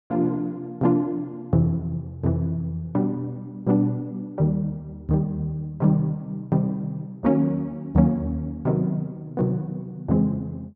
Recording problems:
treble cut off; nothing above 7.6 kHz

